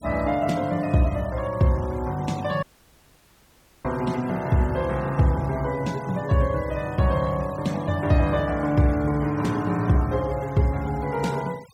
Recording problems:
denoising artefacts; signal-to-artefact ratio 22 dB
audio cutting out; at 2.5 s for 1 s

